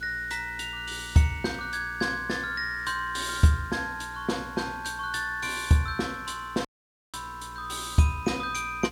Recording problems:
hum; 60 Hz, harmonics up to 480 Hz, SNR 20 dB
background hiss; slope -1 dB per octave, SNR 24 dB
dropout; at 6.5 s

